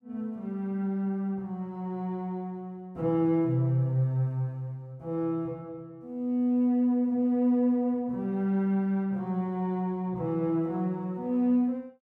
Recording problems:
none

